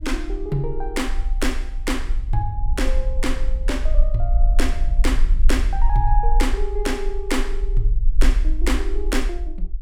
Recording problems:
low-frequency rumble; below 40 Hz, strongest tone 18 Hz, SNR -2 dB
wind on the microphone; below 64 Hz, SNR 5 dB

